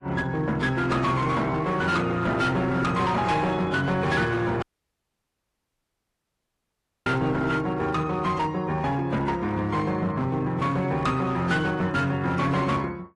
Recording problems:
codec artefacts; AAC, then MP3, log-spectral distance 2 dB, nothing above 10.7 kHz
distorted audio; hard clipping, uneven, signal-to-distortion ratio 11 dB
audio cutting out; at 4.5 s for 2.5 s

